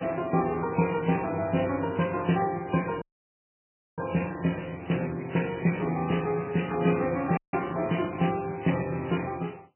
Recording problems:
codec artefacts; MP3, log-spectral distance 13 dB, nothing above 2.9 kHz
audio cutting out; at 3 s for 1 s and at 7.5 s

